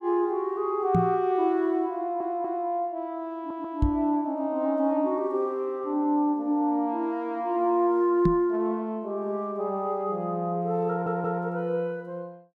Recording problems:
knock on the microphone; at 1 s, at 4 s and at 8.5 s; peak +6 dB vs average level
audio stuttering; at 2 s, at 3.5 s and at 11 s

